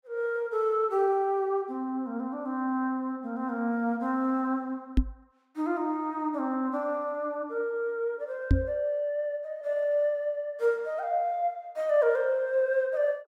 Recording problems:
microphone thump; at 5 s and at 8.5 s; peak +8 dB vs average level

